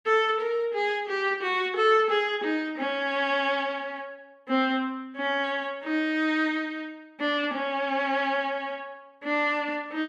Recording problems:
none

